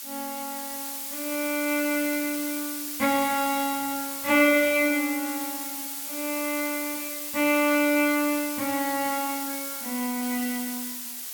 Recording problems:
background hiss; slope +4 dB per octave, SNR 5 dB

